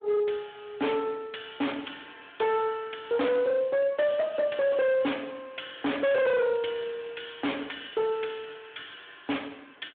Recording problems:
telephone audio; 260 Hz to 3.6 kHz, Speex
distortion; hard clipping, signal-to-distortion ratio 7 dB

